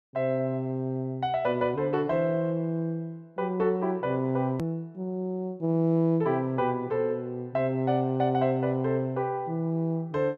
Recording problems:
edit click; at 4.5 s

